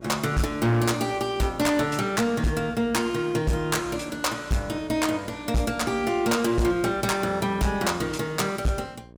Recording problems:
distortion; hard clipping, signal-to-distortion ratio 11 dB
electrical hum; 60 Hz, harmonics up to 1.1 kHz, SNR 24 dB

